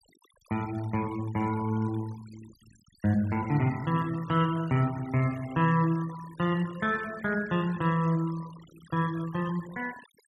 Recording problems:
denoising artefacts; signal-to-artefact ratio 20 dB

